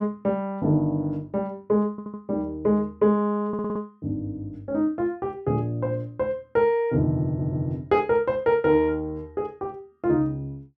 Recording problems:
stutter; at 2 s, at 3.5 s and at 7.5 s

